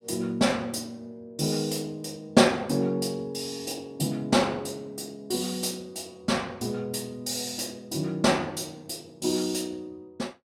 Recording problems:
none

